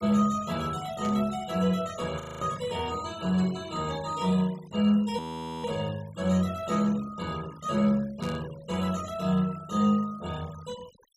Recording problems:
denoising artefacts; signal-to-artefact ratio 20 dB
static burst; at 1 s and at 8 s; peak -12 dB vs average level
audio freezing; at 2 s and at 5 s

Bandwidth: 15.5 kHz